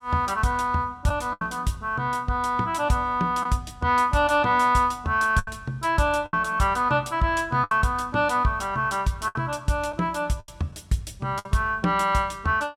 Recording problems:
packet loss; 4% of the sound replaced, filled with the last packet

